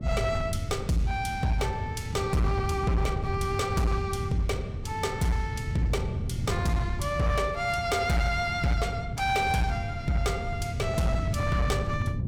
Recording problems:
distorted audio; hard clipping, signal-to-distortion ratio 12 dB
wind on the microphone; below 150 Hz, SNR 5 dB

